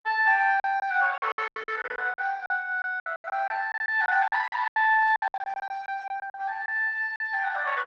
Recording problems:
codec artefacts; Opus, log-spectral distance 3 dB
lost packets; 16% of the sound replaced, filled with silence

